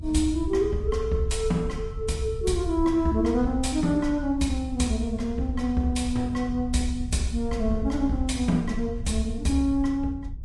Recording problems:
lossy compression; Vorbis, log-spectral distance 2 dB, nothing above 11 kHz
rumble; below 76 Hz, SNR 10 dB

